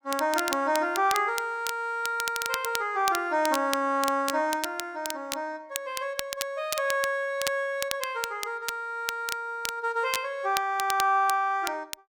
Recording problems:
crackle; vinyl, SNR 8 dB

